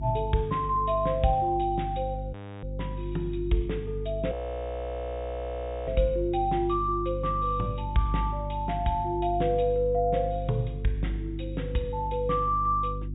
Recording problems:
treble missing; nothing above 4 kHz
hum; 50 Hz, harmonics up to 350 Hz, SNR 7 dB
frozen audio; at 2.5 s and at 4.5 s for 1.5 s

